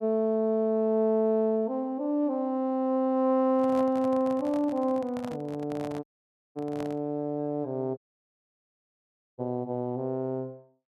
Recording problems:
handling noise; from 3.5 to 7 s; peak -9 dB vs average level
audio cutting out; at 6 s for 0.5 s and at 8 s for 1.5 s

